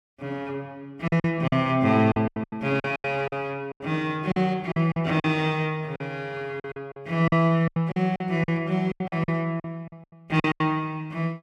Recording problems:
packet loss; 14% of the sound replaced, filled with silence

